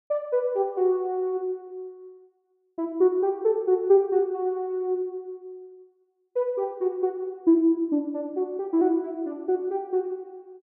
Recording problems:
none

